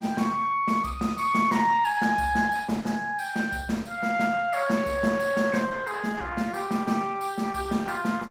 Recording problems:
lossy compression; Opus, log-spectral distance 4 dB

